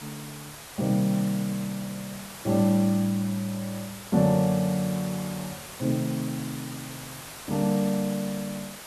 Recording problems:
hiss; slope -2 dB per octave, SNR 13 dB

